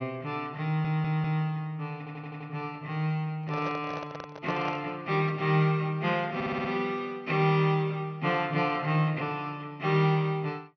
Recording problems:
low-pass filter; nothing above 6.1 kHz
audio stuttering; at 0.5 s, at 2 s and at 6.5 s
handling noise; from 3.5 to 5 s; peak -5 dB vs average level

